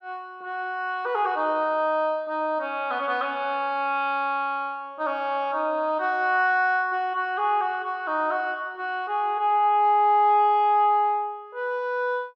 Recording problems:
none

